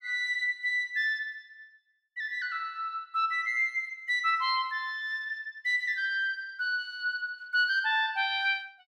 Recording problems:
none

